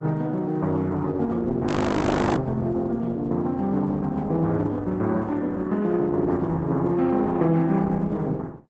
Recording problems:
codec artefacts; Opus, log-spectral distance 3 dB, nothing above 8 kHz
frozen audio; at 1.5 s for 0.5 s

